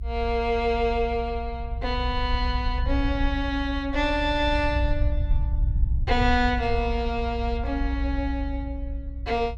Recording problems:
low-frequency rumble; below 64 Hz, SNR 3 dB

